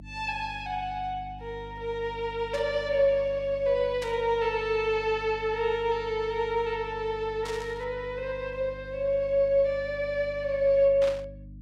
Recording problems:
electrical hum; 50 Hz, harmonics up to 300 Hz, SNR 18 dB
static burst; 4 times, first at 2.5 s; peak -7 dB vs average level

